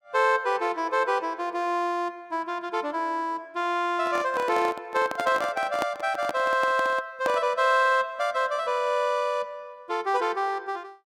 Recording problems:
microphone handling noise; from 4 to 7.5 s; peak +1 dB vs average level

